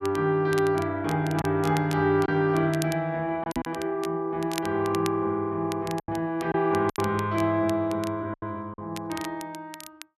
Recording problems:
crackle; vinyl, SNR 16 dB
packet loss; 4% of the sound replaced, filled with silence
knock on the microphone; at 3.5 s and at 6 s; peak -2 dB vs average level

